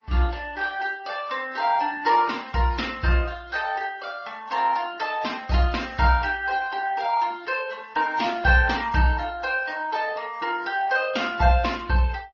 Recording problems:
lossy compression; MP3, then Opus, log-spectral distance 4 dB, nothing above 5.7 kHz

